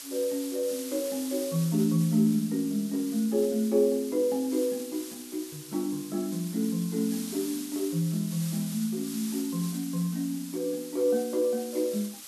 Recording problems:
hiss; slope +2 dB per octave, SNR 12 dB

